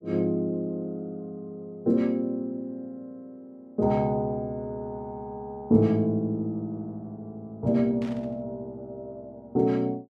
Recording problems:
static burst; at 8 s; peak -14 dB vs average level

